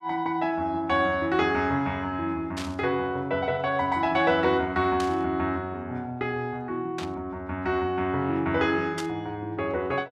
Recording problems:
burst of static; 4 times, first at 2.5 s; peak -4 dB vs average level

